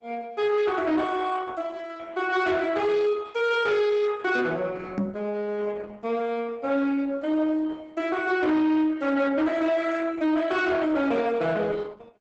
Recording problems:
lossy codec; Opus, log-spectral distance 3 dB, nothing above 8 kHz
distorted audio; soft clipping, signal-to-distortion ratio 11 dB
knock on the microphone; at 5 s; peak +2 dB vs average level

